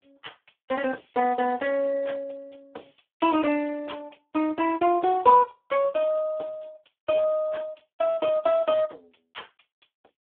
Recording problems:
telephone audio; 320 Hz to 3.1 kHz, Speex

